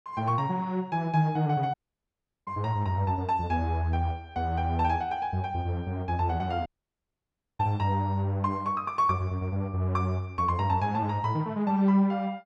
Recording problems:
dropout; at 1.5 s for 0.5 s and at 6.5 s for 1 s

